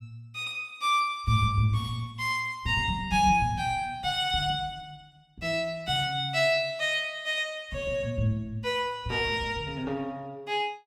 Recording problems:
none

